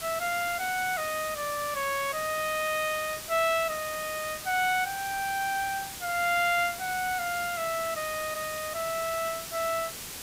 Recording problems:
hiss; slope 0 dB per octave, SNR 8 dB

